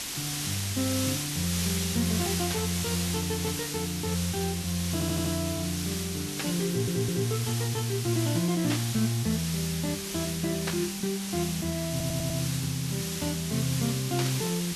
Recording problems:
background hiss; SNR 3 dB
static burst; 5 times, first at 2.5 s; peak +1 dB vs average level
stutter; at 5 s, at 6.5 s and at 12 s

